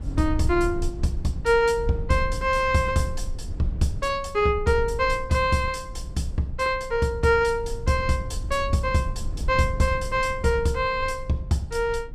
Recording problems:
rumble; below 74 Hz, SNR 10 dB

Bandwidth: 14.5 kHz